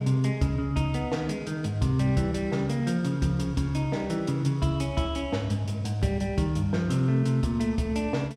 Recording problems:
none

